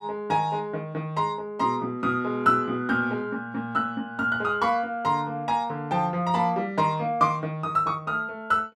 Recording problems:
none

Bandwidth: 13 kHz